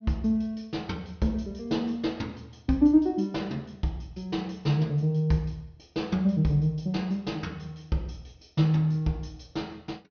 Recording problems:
low-pass filter; nothing above 6.2 kHz

